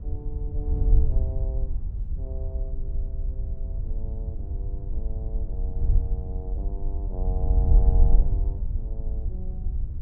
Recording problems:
wind noise; below 64 Hz, SNR -15 dB

